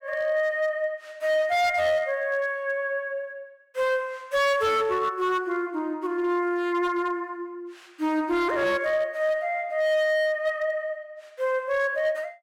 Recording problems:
distorted audio; hard clipping, signal-to-distortion ratio 12 dB

